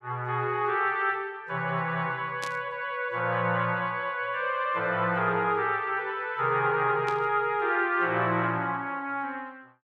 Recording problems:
static burst; at 2.5 s and at 7 s; peak -5 dB vs average level

